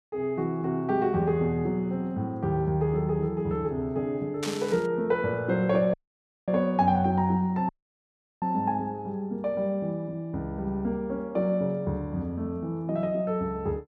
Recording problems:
static burst; at 4.5 s; peak -2 dB vs average level
dropout; at 6 s for 0.5 s and at 7.5 s for 0.5 s

